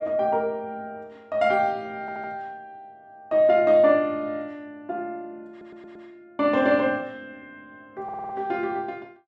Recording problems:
stutter; at 2 s, at 5.5 s and at 8 s

